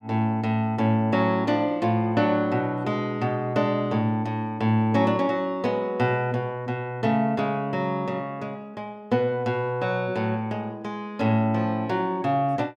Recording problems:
none

